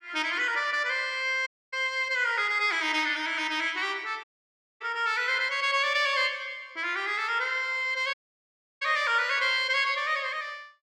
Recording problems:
audio cutting out; at 1.5 s, at 4 s for 0.5 s and at 8 s for 0.5 s

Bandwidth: 14 kHz